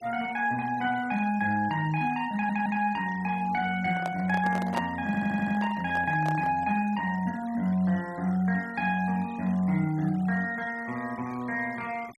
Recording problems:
noise reduction artefacts; signal-to-artefact ratio 21 dB
audio stuttering; at 2.5 s and at 5 s
microphone handling noise; from 4 to 6.5 s; peak -1 dB vs average level

